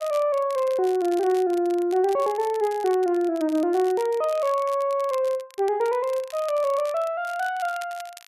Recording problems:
crackle; vinyl, SNR 21 dB

